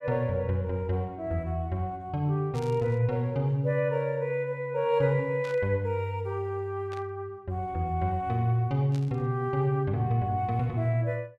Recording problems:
static burst; 4 times, first at 2.5 s; peak -14 dB vs average level

